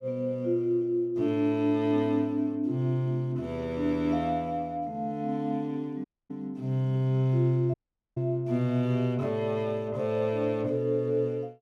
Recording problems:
audio cutting out; at 6 s and at 7.5 s

